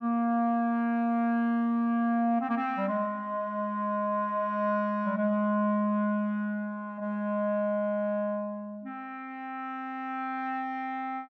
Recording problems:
none

